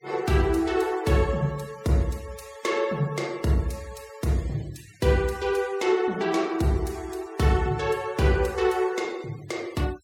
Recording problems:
denoising artefacts; signal-to-artefact ratio 23 dB

